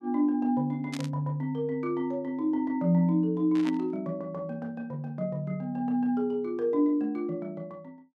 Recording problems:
static burst; at 1 s and at 3.5 s; peak -7 dB vs average level

